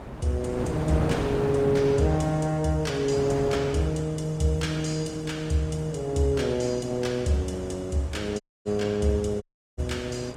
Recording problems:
lossy compression; Opus, log-spectral distance 3 dB, nothing above 18.3 kHz
wind noise; below 650 Hz, SNR 9 dB
audio cutting out; at 8.5 s and at 9.5 s

